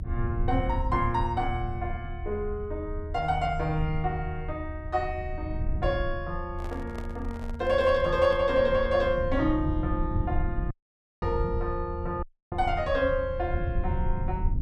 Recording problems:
rumble; below 90 Hz, SNR 5 dB
handling noise; from 6.5 to 8.5 s; peak -8 dB vs average level
audio cutting out; at 11 s for 0.5 s and at 12 s

